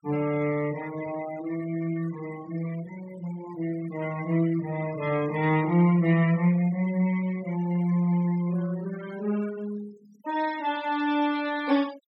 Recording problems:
denoising artefacts; signal-to-artefact ratio 18 dB

